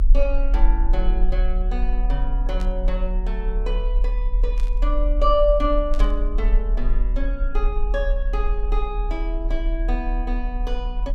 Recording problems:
mains hum; 60 Hz, harmonics up to 1 kHz, SNR 16 dB
low-frequency rumble; below 40 Hz, strongest tone 38 Hz, SNR -4 dB
burst of static; at 2.5 s, at 4.5 s and at 6 s; peak -9 dB vs average level

